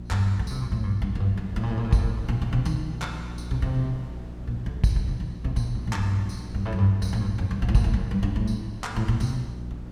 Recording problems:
hum; 60 Hz, harmonics up to 360 Hz, SNR 12 dB
wind noise; below 280 Hz, SNR 19 dB

